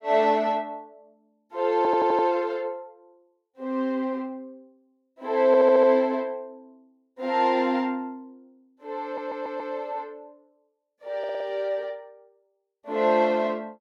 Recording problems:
stutter; 4 times, first at 2 s

